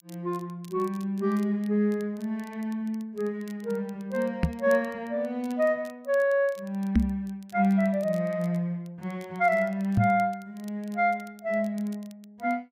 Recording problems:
crackle; vinyl, SNR 27 dB
microphone bump; at 4.5 s, at 7 s and at 10 s; peak +9 dB vs average level

